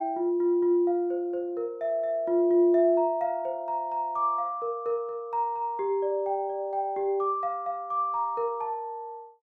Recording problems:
none

